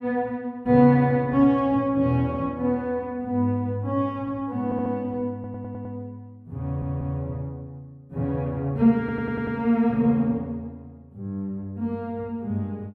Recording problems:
audio stuttering; 4 times, first at 4.5 s

